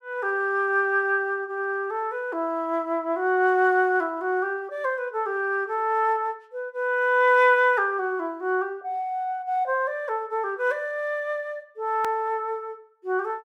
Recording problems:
edit click; at 12 s

